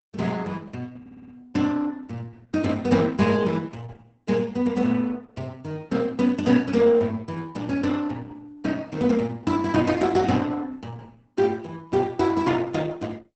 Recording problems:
codec artefacts; Opus, log-spectral distance 3 dB, nothing above 8.2 kHz
stutter; at 1 s

